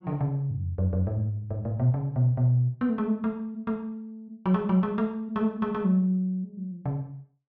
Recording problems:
none

